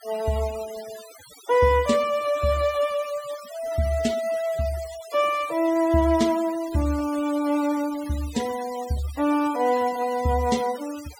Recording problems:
noise reduction artefacts; signal-to-artefact ratio 17 dB

